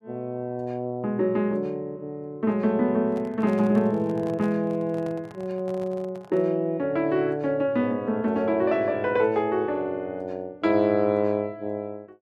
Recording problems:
handling noise; from 3 to 6.5 s; peak -11 dB vs average level

